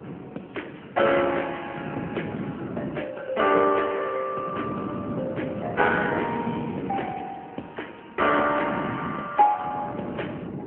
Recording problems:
phone line; 260 Hz to 3.1 kHz, AMR-NB
wind noise; below 390 Hz, SNR 8 dB

